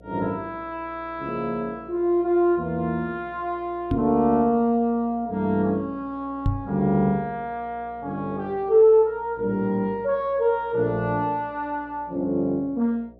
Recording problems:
hum; 60 Hz, harmonics up to 720 Hz, SNR 26 dB
microphone thump; at 4 s and at 6.5 s; peak +3 dB vs average level

